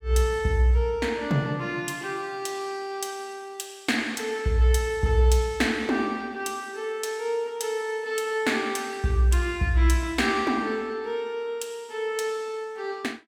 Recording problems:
none

